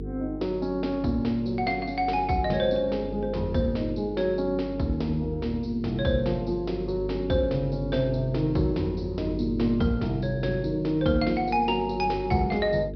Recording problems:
treble missing; nothing above 5.5 kHz
hum; 50 Hz, harmonics up to 450 Hz, SNR 10 dB

